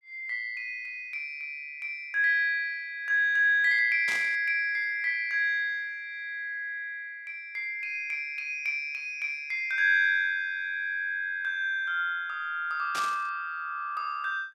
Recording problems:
burst of static; at 4 s and at 13 s; peak -3 dB vs average level

